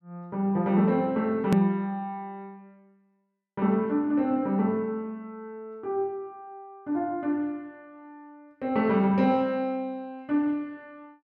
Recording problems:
click at an edit; at 1.5 s

